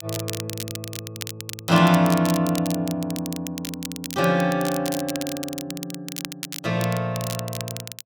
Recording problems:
crackle; vinyl, SNR 10 dB

